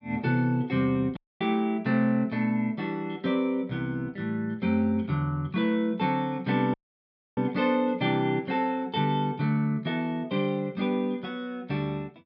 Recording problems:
audio cutting out; at 1 s and at 6.5 s for 0.5 s

